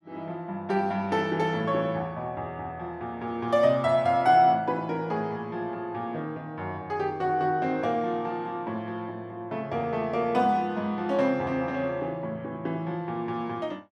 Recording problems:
none

